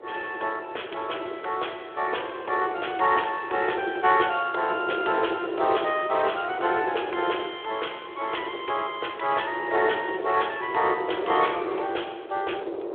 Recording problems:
telephone audio; 320 Hz to 3.5 kHz, Speex
wind on the microphone; below 520 Hz, SNR 8 dB

